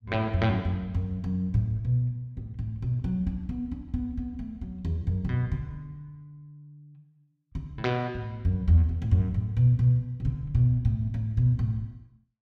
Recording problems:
none

